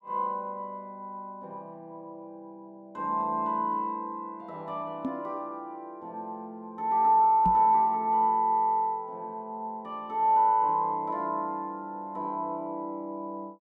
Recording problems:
knock on the microphone; at 5 s and at 7.5 s; peak 0 dB vs average level

